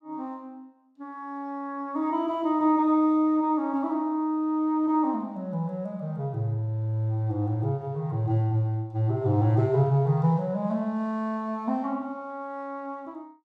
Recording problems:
none

